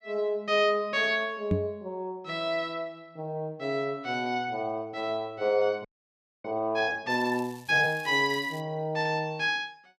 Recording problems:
knock on the microphone; at 1.5 s; peak +5 dB vs average level
frozen audio; at 6 s for 0.5 s
crackle; from 7 to 8.5 s; loose cable, SNR 22 dB

